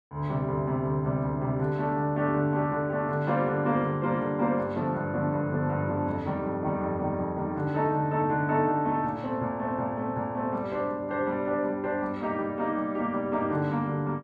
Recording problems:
none

